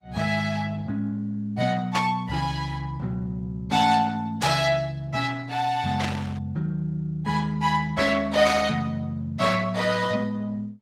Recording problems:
codec artefacts; Opus, log-spectral distance 3 dB
burst of static; 4 times, first at 2 s; peak 0 dB vs average level

